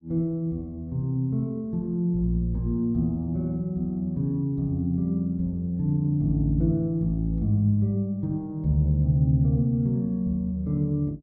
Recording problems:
none

